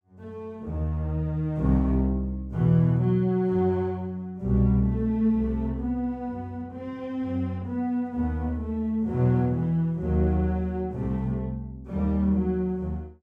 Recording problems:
none

